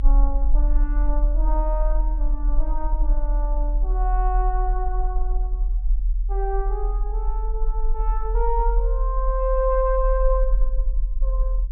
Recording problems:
treble missing; nothing above 3.6 kHz
low-frequency rumble; below 42 Hz, strongest tone 40 Hz, SNR -4 dB

